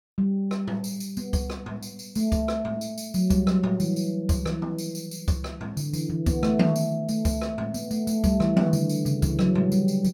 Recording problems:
none

